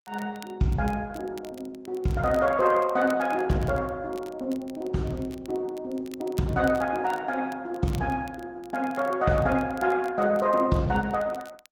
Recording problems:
lossy compression; Opus, log-spectral distance 2 dB
crackle; vinyl, SNR 25 dB

